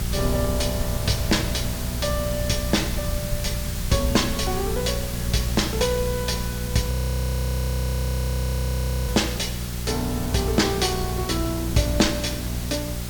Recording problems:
hum; 60 Hz, harmonics up to 780 Hz, SNR 5 dB
hiss; slope +1 dB per octave, SNR 8 dB
low-frequency rumble; below 130 Hz, SNR 9 dB
audio freezing; at 7 s for 2 s

